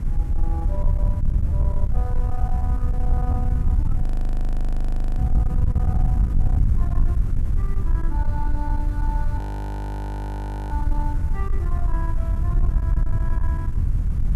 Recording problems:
distorted audio; soft clipping, signal-to-distortion ratio 11 dB
hiss; SNR 12 dB
rumble; below 54 Hz, SNR -9 dB
wind noise; below 76 Hz, SNR -12 dB
audio freezing; at 4 s for 1 s and at 9.5 s for 1.5 s

